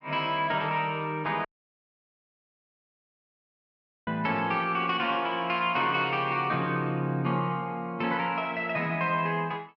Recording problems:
dropout; at 1.5 s for 2.5 s

